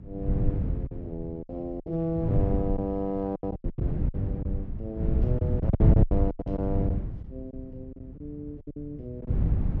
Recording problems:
hum; 60 Hz, harmonics up to 360 Hz, SNR 21 dB
wind on the microphone; below 140 Hz, SNR -5 dB
lost packets; 12% of the sound replaced, filled with silence

